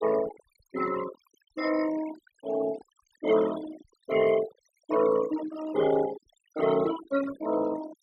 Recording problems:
noise reduction artefacts; signal-to-artefact ratio 11 dB

